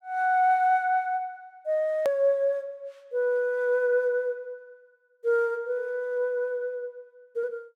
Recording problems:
edit click; at 2 s

